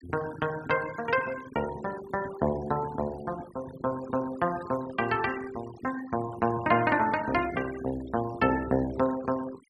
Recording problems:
denoising artefacts; signal-to-artefact ratio 16 dB

